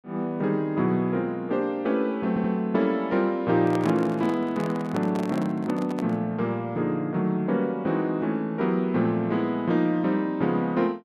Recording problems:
stutter; at 2.5 s
handling noise; from 3.5 to 6 s; peak -4 dB vs average level

